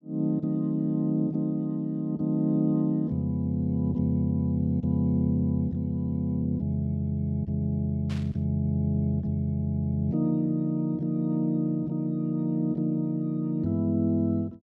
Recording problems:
static burst; at 8 s; peak -12 dB vs average level

